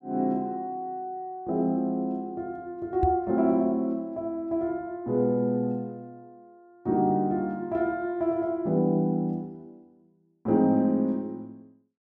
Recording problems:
knock on the microphone; at 3 s; peak +3 dB vs average level

